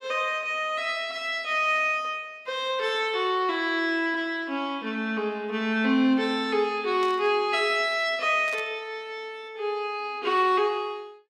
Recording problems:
burst of static; at 7 s and at 8.5 s; peak -11 dB vs average level

